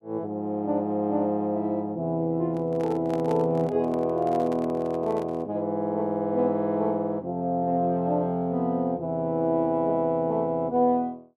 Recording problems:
microphone handling noise; from 2.5 to 5.5 s; peak -9 dB vs average level

